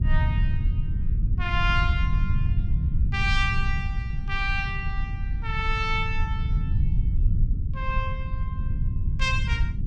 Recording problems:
rumble; below 96 Hz, SNR -2 dB

